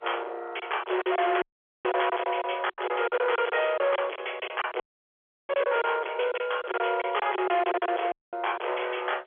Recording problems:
phone line; 320 Hz to 3.4 kHz, G.711
distorted audio; hard clipping, signal-to-distortion ratio 6 dB
packet loss; 11% of the sound replaced, filled with silence
dropout; at 1.5 s, at 5 s for 0.5 s and at 8 s
crackling; at 2 s and at 7 s; loose cable, SNR 27 dB

